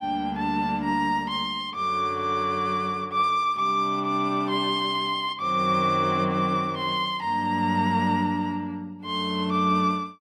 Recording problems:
none

